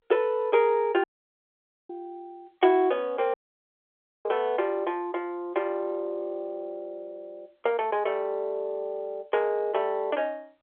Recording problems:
telephone audio; 320 Hz to 3.5 kHz, G.711
audio cutting out; at 1 s for 1 s and at 3.5 s for 1 s

